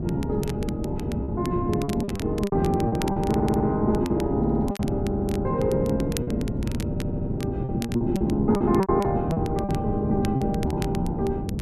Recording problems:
wind on the microphone; below 270 Hz, SNR 3 dB
crackling; vinyl, SNR 17 dB
packet loss; 9% of the sound replaced, filled with repeated pitch periods
audio stuttering; 4 times, first at 3.5 s

